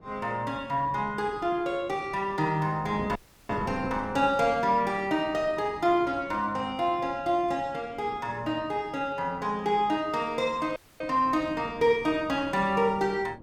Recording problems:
wind noise; below 390 Hz, SNR 18 dB
audio cutting out; at 3 s and at 11 s

